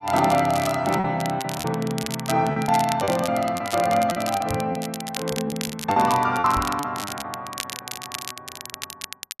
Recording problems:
crackle; vinyl, SNR 11 dB
lost packets; 12% of the sound replaced, filled with repeated pitch periods
microphone thump; at 4.5 s and at 6.5 s; peak -3 dB vs average level

